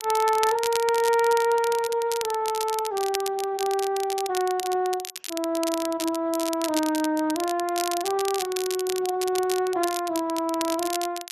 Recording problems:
lossy codec; Speex, log-spectral distance 2 dB
crackle; vinyl, SNR 9 dB

